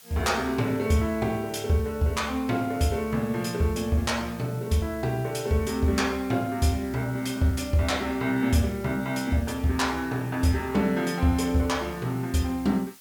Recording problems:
background hiss; slope +2 dB per octave, SNR 22 dB

